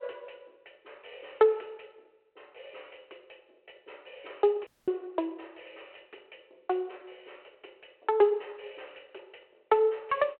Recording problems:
telephone audio; 320 Hz to 3.1 kHz, G.726
dropout; at 4.5 s

